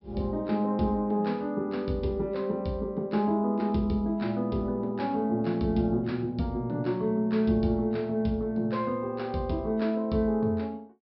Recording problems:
treble missing; nothing above 5.4 kHz

